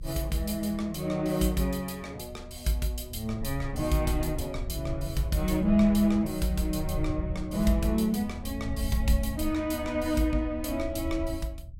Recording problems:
rumble; below 82 Hz, SNR 9 dB

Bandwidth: 16 kHz